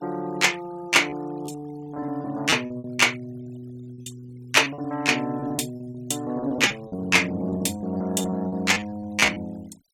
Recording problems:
noise reduction artefacts; signal-to-artefact ratio 25 dB
lost packets; 12% of the sound replaced, filled with repeated pitch periods

